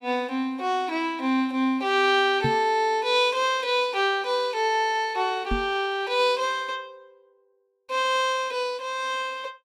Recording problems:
knock on the microphone; at 2.5 s and at 5.5 s; peak +1 dB vs average level

